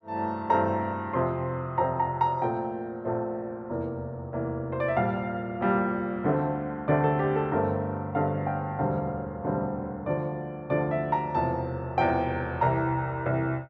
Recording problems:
none

